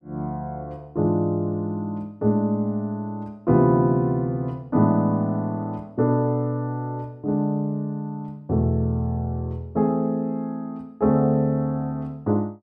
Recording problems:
none

